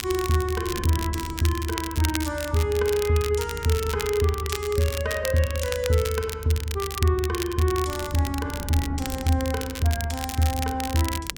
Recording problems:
hum; 50 Hz, harmonics up to 500 Hz, SNR 22 dB
wind noise; below 260 Hz, SNR 18 dB
crackle; vinyl, SNR 9 dB

